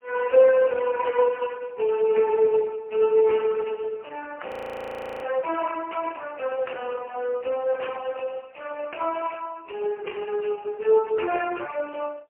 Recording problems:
phone line; 320 Hz to 3 kHz, AMR-NB, then MP3
frozen audio; at 4.5 s for 1 s

